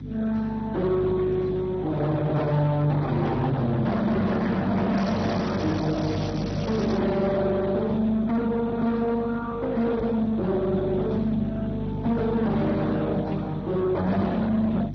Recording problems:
lossy compression; Speex, then MP2, log-spectral distance 3 dB, nothing above 6 kHz
distortion; soft clipping, signal-to-distortion ratio 6 dB
hum; 50 Hz, harmonics up to 350 Hz, SNR 10 dB
crackling; from 5 to 7 s; loose cable, SNR 14 dB
microphone bump; at 10 s; peak -5 dB vs average level

